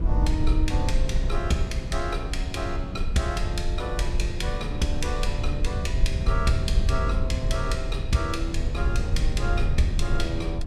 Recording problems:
low-frequency rumble; below 70 Hz, SNR -2 dB
wind on the microphone; below 290 Hz, SNR 11 dB

